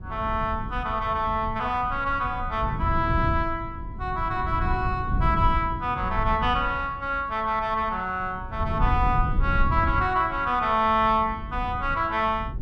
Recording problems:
rumble; below 120 Hz, SNR 6 dB

